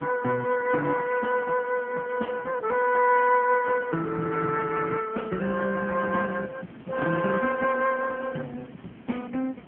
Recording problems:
phone line; 170 Hz to 3 kHz, AMR-NB
wind noise; below 490 Hz, SNR 19 dB

